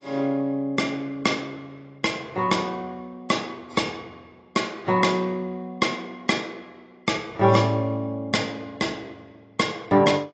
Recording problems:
codec artefacts; AAC, log-spectral distance 3 dB, nothing above 7.6 kHz

